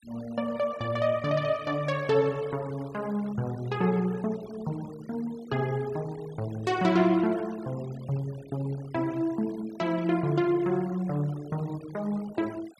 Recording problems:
denoising artefacts; signal-to-artefact ratio 21 dB

